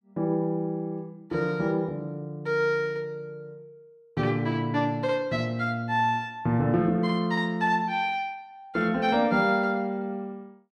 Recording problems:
none

